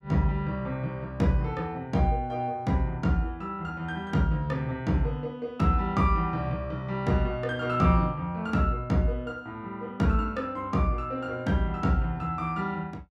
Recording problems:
none

